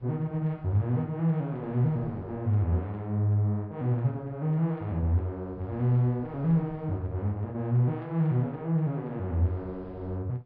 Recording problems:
treble cut off; nothing above 5.5 kHz
wind on the microphone; below 290 Hz, SNR 25 dB

